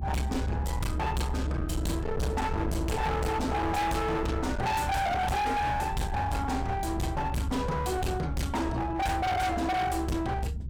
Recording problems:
distorted audio; hard clipping, signal-to-distortion ratio 6 dB
rumble; below 190 Hz, strongest tone 68 Hz, SNR 5 dB

